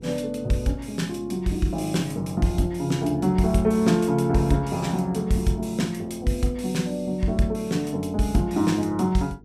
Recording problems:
hum; 50 Hz, harmonics up to 450 Hz, SNR 24 dB

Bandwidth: 15 kHz